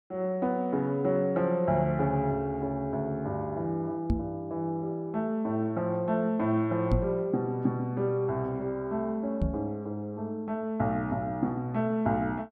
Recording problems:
microphone thump; at 4 s, at 7 s and at 9.5 s; peak +5 dB vs average level

